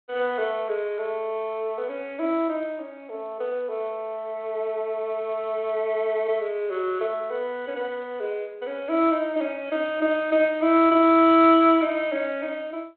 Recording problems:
telephone audio; 280 Hz to 3.9 kHz, G.726

